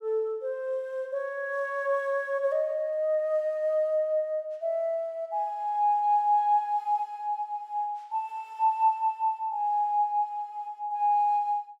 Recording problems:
none

